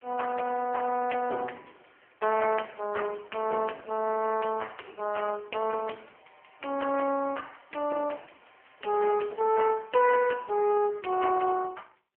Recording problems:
phone line; 260 Hz to 2.8 kHz, AMR-NB

